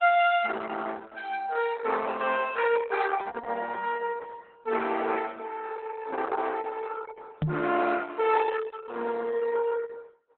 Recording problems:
codec artefacts; Opus, log-spectral distance 4 dB, nothing above 3.5 kHz
knock on the microphone; at 7.5 s; peak +5 dB vs average level

